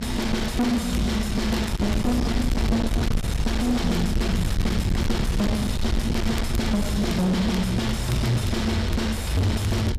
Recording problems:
distortion; soft clipping, signal-to-distortion ratio 6 dB
low-frequency rumble; below 150 Hz, SNR 3 dB
wind on the microphone; below 200 Hz, SNR 5 dB
crackling; vinyl, SNR 21 dB

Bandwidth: 14.5 kHz